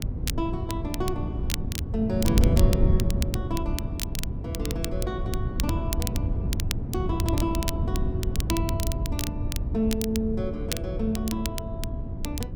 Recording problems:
wind noise; below 140 Hz, SNR -3 dB
crackle; vinyl, SNR 5 dB

